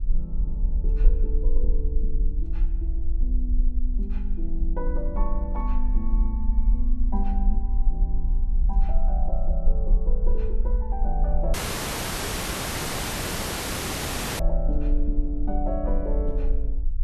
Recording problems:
rumble; below 42 Hz, strongest tone 20 Hz, SNR -8 dB
wind on the microphone; below 60 Hz, SNR 5 dB
dropout; at 12 s for 3 s

